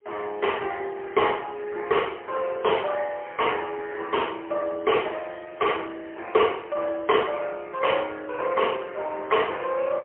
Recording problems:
telephone audio; 320 Hz to 3.1 kHz, AMR-NB, then MP3

